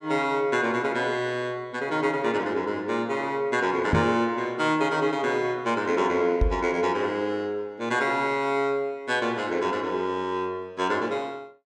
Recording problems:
microphone bump; at 4 s and at 6.5 s; peak +7 dB vs average level

